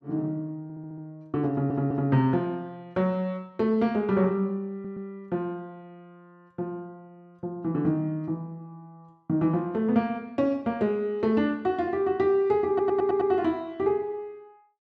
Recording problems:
audio stuttering; 4 times, first at 0.5 s

